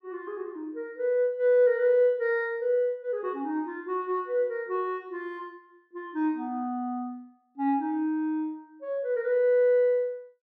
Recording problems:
none

